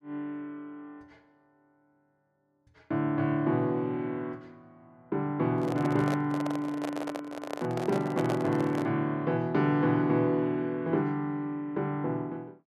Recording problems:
microphone handling noise; from 5.5 to 9 s; peak -1 dB vs average level

